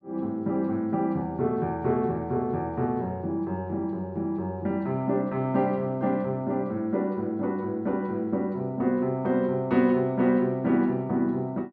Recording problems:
none

